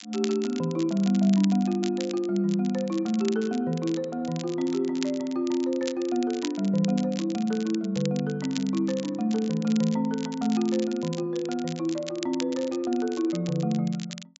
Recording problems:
treble missing; nothing above 8 kHz
crackling; vinyl, SNR 15 dB

